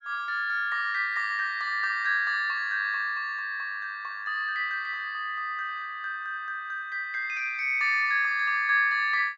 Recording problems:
treble cut off; nothing above 8 kHz

